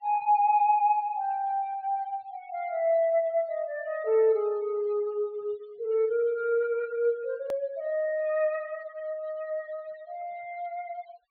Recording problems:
treble missing; nothing above 4.5 kHz
denoising artefacts; signal-to-artefact ratio 27 dB
edit click; at 7.5 s

